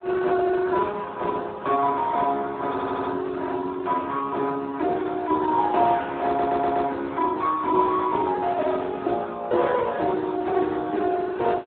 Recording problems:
telephone audio; 240 Hz to 2 kHz, Speex
audio stuttering; at 2.5 s and at 6.5 s

